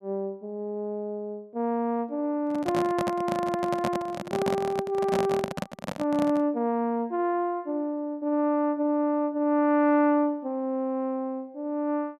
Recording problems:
microphone handling noise; from 2.5 to 6.5 s; peak +2 dB vs average level

